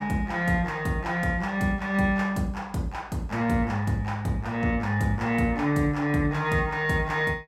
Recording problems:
none

